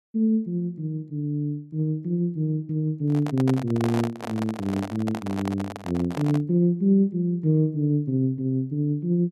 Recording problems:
microphone handling noise; from 3 to 6.5 s; peak -3 dB vs average level

